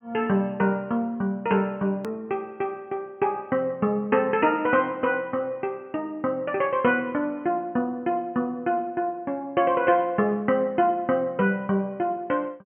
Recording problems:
treble missing; nothing above 3.2 kHz
edit click; at 2 s

